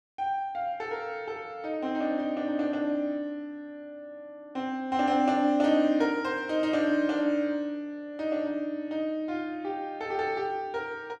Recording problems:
none

